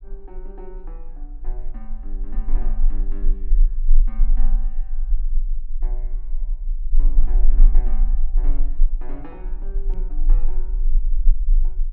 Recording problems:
rumble; below 30 Hz, strongest tone 20 Hz, SNR -19 dB
microphone bump; at 10 s; peak +6 dB vs average level

